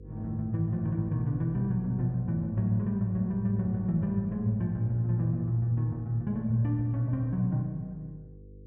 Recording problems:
electrical hum; 50 Hz, harmonics up to 500 Hz, SNR 19 dB

